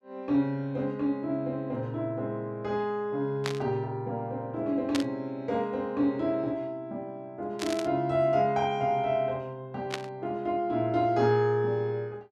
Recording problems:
burst of static; 4 times, first at 3.5 s; peak +1 dB vs average level

